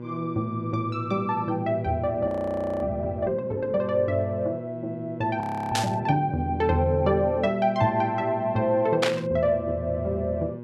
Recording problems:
electrical hum; 60 Hz, harmonics up to 1.1 kHz, SNR 12 dB
frozen audio; at 2.5 s for 0.5 s and at 5.5 s
static burst; at 6 s and at 9 s; peak +5 dB vs average level

